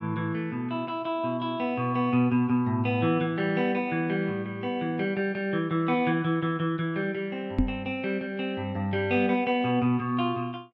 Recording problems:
microphone bump; at 7.5 s; peak +6 dB vs average level

